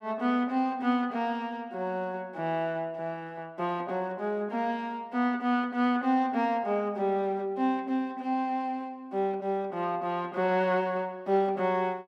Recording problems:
none

